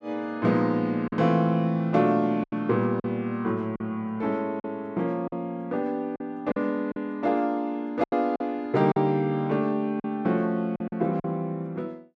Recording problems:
lost packets; 6% of the sound replaced, filled with silence

